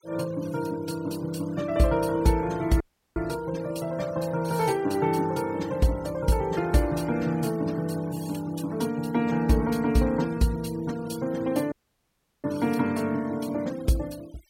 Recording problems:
denoising artefacts; signal-to-artefact ratio 20 dB
audio cutting out; at 3 s and at 12 s for 0.5 s

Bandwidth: 16.5 kHz